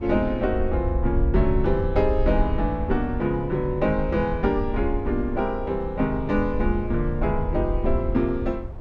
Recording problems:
rumble; below 72 Hz, SNR 5 dB
wind noise; below 600 Hz, SNR 21 dB

